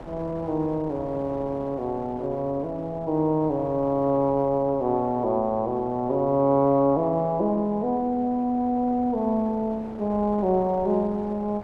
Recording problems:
wind noise; below 730 Hz, SNR 18 dB

